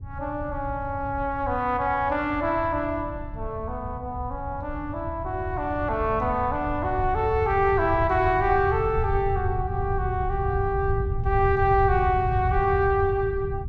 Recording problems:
rumble; below 110 Hz, SNR 7 dB

